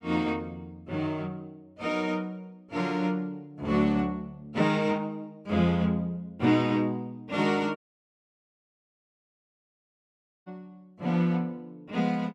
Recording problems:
dropout; at 8 s for 2.5 s

